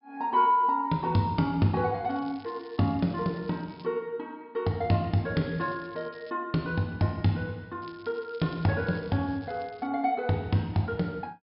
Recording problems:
treble missing; nothing above 5.2 kHz
crackling; from 2 to 4 s, at 5.5 s and from 8 to 10 s; loose cable, SNR 27 dB

